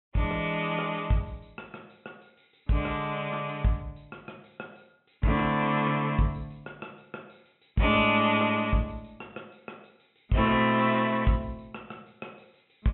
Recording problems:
low-pass filter; nothing above 3.7 kHz

